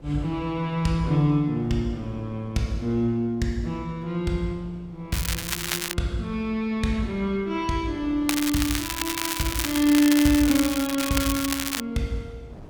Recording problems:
wind on the microphone; below 430 Hz, SNR 23 dB
crackle; at 5 s and from 8.5 to 12 s; loose cable, SNR 3 dB

